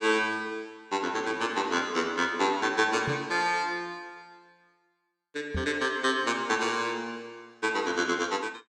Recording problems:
microphone thump; at 3 s and at 5.5 s; peak -2 dB vs average level

